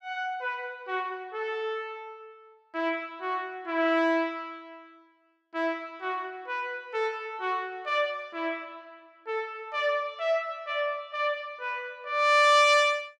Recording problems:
none

